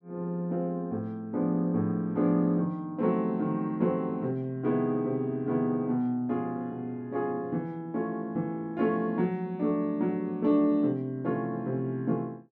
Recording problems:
none

